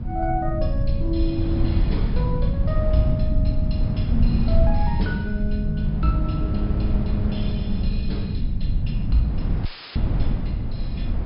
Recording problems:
treble missing; nothing above 5.5 kHz
electrical hum; 60 Hz, harmonics up to 660 Hz, SNR 25 dB
rumble; below 110 Hz, SNR -1 dB
wind on the microphone; below 120 Hz, SNR 1 dB
audio cutting out; at 9.5 s; filled with static

